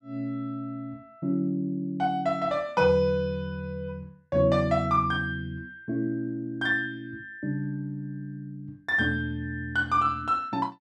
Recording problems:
none

